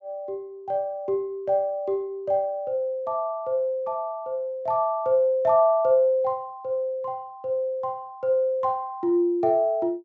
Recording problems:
low-pass filter; nothing above 8 kHz

